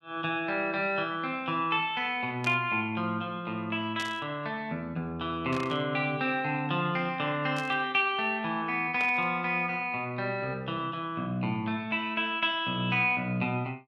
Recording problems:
static burst; 5 times, first at 2.5 s; peak -6 dB vs average level

